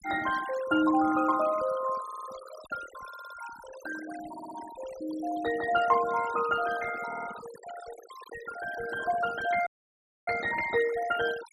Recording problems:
noise reduction artefacts; signal-to-artefact ratio 14 dB
audio stuttering; 4 times, first at 2 s
dropout; at 9.5 s for 0.5 s

